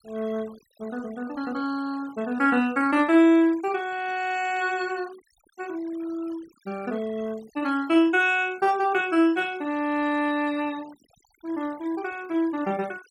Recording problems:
denoising artefacts; signal-to-artefact ratio 24 dB

